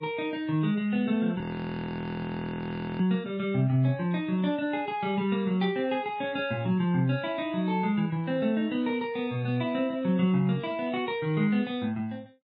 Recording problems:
lossy codec; MP3, log-spectral distance 2 dB, nothing above 11.3 kHz
audio freezing; at 1.5 s for 1.5 s
static burst; at 5.5 s; peak -13 dB vs average level

